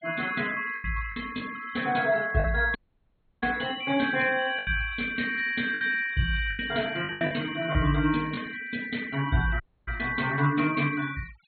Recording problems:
treble cut off; nothing above 4.3 kHz
denoising artefacts; signal-to-artefact ratio 18 dB
packet loss; 6% of the sound replaced, filled with the last packet
dropout; at 3 s for 0.5 s and at 9.5 s

